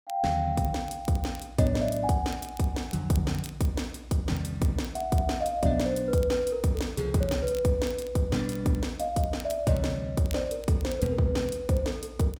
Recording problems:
crackling; vinyl, SNR 22 dB

